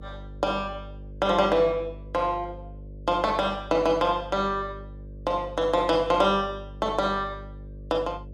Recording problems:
electrical hum; 50 Hz, harmonics up to 600 Hz, SNR 16 dB

